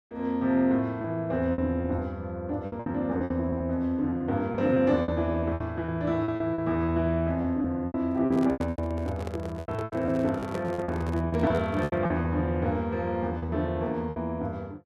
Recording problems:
lost packets; 13% of the sound replaced, filled with repeated pitch periods
microphone handling noise; from 8 to 12 s; peak -3 dB vs average level

